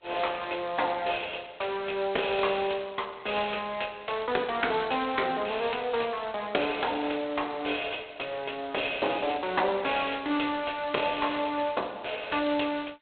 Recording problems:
telephone audio; 320 Hz to 3.7 kHz, G.726

